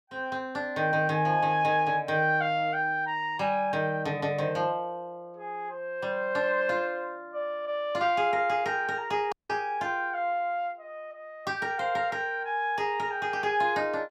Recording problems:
dropout; at 9.5 s

